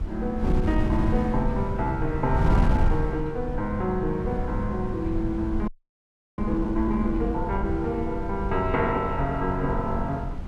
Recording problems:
wind on the microphone; below 120 Hz, SNR 3 dB
audio freezing; at 5.5 s for 0.5 s

